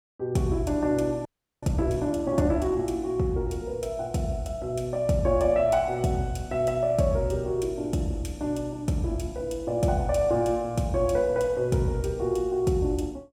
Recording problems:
audio freezing; at 1.5 s

